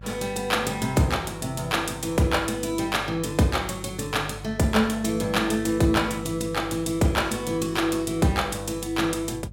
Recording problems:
electrical hum; 50 Hz, harmonics up to 350 Hz, SNR 16 dB

